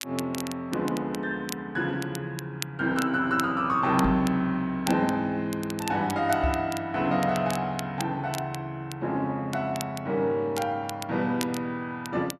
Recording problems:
crackle; vinyl, SNR 13 dB
knock on the microphone; at 4 s and at 6.5 s; peak +3 dB vs average level

